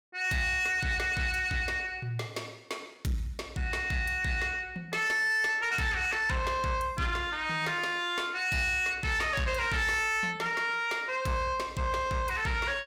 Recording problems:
distorted audio; soft clipping, signal-to-distortion ratio 12 dB

